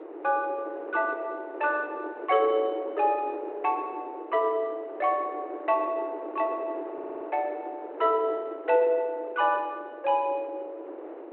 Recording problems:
phone line; 280 Hz to 3.2 kHz, G.726
wind on the microphone; below 610 Hz, SNR 11 dB
stutter; at 7 s

